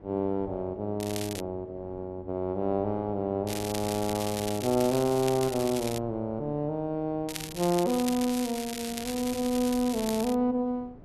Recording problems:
wind noise; below 400 Hz, SNR 20 dB
crackle; at 1 s, from 3.5 to 6 s and from 7.5 to 10 s; loose cable, SNR 9 dB

